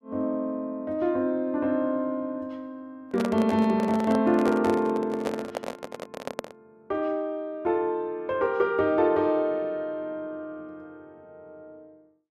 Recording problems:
handling noise; from 3 to 6.5 s; peak -1 dB vs average level

